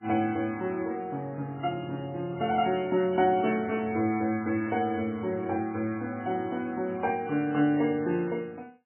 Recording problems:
lossy codec; MP3, log-spectral distance 2 dB, nothing above 2.8 kHz

